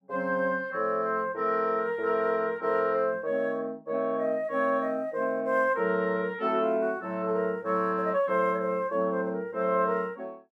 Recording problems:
none

